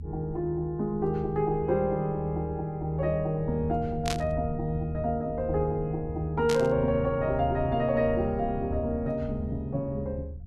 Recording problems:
rumble; below 100 Hz, strongest tone 76 Hz, SNR 10 dB
burst of static; at 4 s and at 6.5 s; peak 0 dB vs average level

